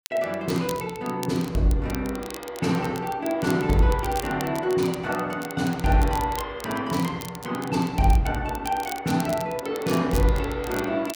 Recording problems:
crackling; vinyl, SNR 16 dB

